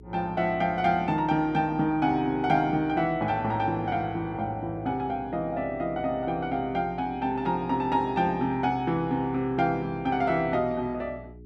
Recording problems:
hum; 60 Hz, harmonics up to 420 Hz, SNR 21 dB

